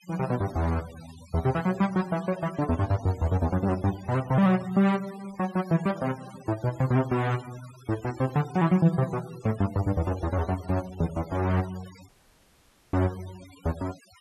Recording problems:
denoising artefacts; signal-to-artefact ratio 19 dB
audio cutting out; at 12 s for 1 s

